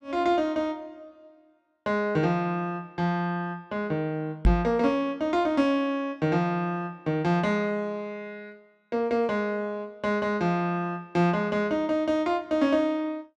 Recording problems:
microphone thump; at 4.5 s; peak +8 dB vs average level

